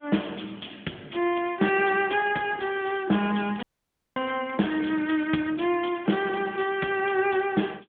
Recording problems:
phone line; 150 Hz to 3.4 kHz, AMR-NB
crackling; from 1.5 to 5.5 s; loose cable, SNR 26 dB
dropout; at 3.5 s for 0.5 s

